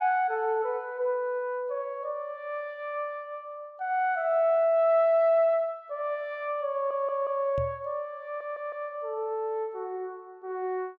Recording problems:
audio stuttering; at 6.5 s and at 8.5 s
microphone bump; at 7.5 s; peak -4 dB vs average level

